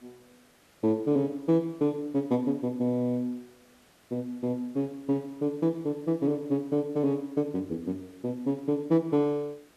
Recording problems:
background hiss; slope -3 dB per octave, SNR 30 dB

